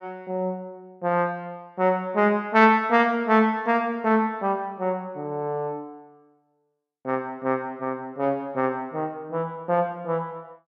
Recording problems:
none

